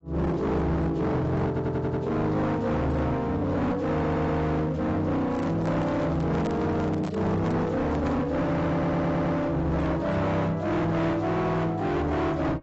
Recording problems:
lossy compression; AAC, log-spectral distance 2 dB, nothing above 7.6 kHz
distortion; hard clipping, signal-to-distortion ratio 7 dB
audio stuttering; at 1.5 s, at 4 s and at 8.5 s
handling noise; from 5.5 to 8.5 s; peak -4 dB vs average level

